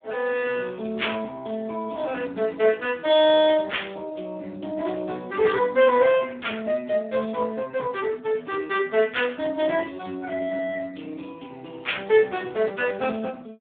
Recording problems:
telephone audio; 220 Hz to 3.6 kHz, Speex

